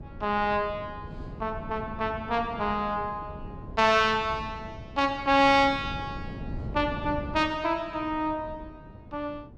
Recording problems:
wind on the microphone; below 240 Hz, SNR 14 dB

